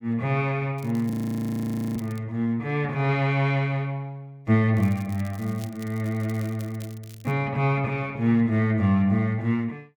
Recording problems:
crackling; from 1 to 2 s and from 5 to 7.5 s; loose cable, SNR 23 dB
audio freezing; at 1 s for 1 s

